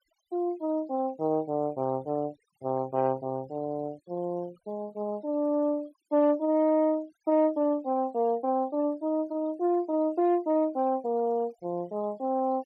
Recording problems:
denoising artefacts; signal-to-artefact ratio 27 dB

